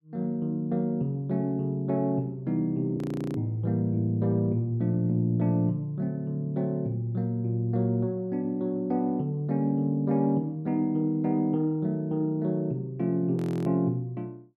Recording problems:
audio freezing; at 3 s and at 13 s

